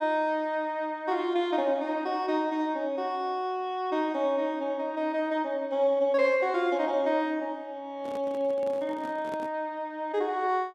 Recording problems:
microphone handling noise; from 8 to 9.5 s; peak -9 dB vs average level

